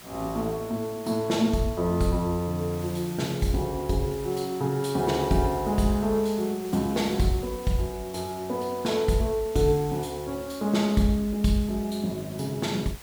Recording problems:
hiss; slope -1 dB per octave, SNR 17 dB

